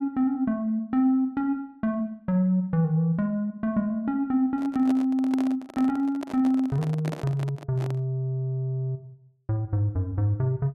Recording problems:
handling noise; from 4.5 to 8 s; peak -5 dB vs average level

